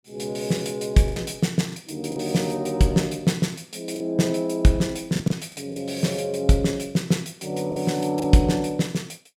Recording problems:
lost packets; 5% of the sound replaced, filled with the last packet

